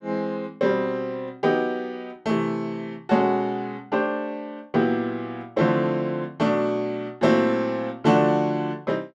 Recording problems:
none

